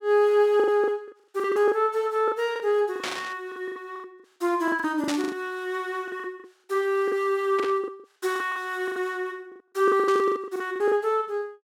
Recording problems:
lost packets; 16% of the sound replaced, filled with the last packet
static burst; 4 times, first at 3 s; peak -1 dB vs average level

